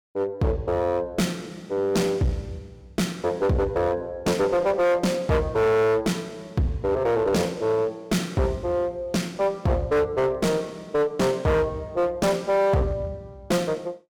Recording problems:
distorted audio; hard clipping, uneven, signal-to-distortion ratio 7 dB

